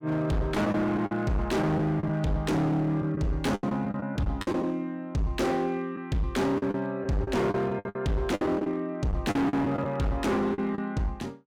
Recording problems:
distorted audio; hard clipping, uneven, signal-to-distortion ratio 7 dB
lost packets; 9% of the sound replaced, filled with the last packet

